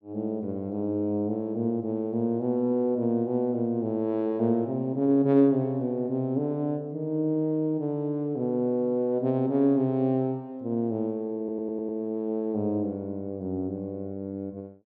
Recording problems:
audio stuttering; at 11 s

